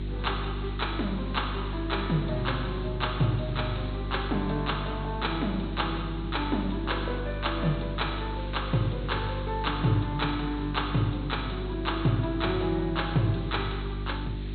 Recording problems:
low-pass filter; nothing above 4.1 kHz
hum; 50 Hz, harmonics up to 400 Hz, SNR 5 dB
hiss; SNR 19 dB

